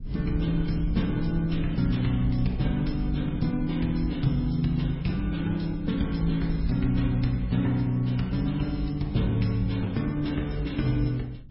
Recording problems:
lossy compression; MP3, log-spectral distance 2 dB, nothing above 5.3 kHz
low-frequency rumble; below 98 Hz, SNR 13 dB
wind noise; below 120 Hz, SNR 17 dB

